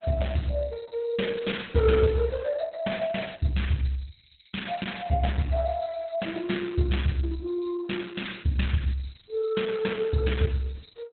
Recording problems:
lossy compression; Opus, log-spectral distance 7 dB, nothing above 4 kHz

